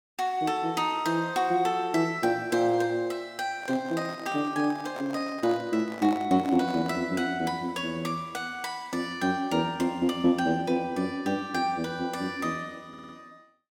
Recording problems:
microphone handling noise; from 3.5 to 7 s; peak -5 dB vs average level
audio stuttering; at 13 s

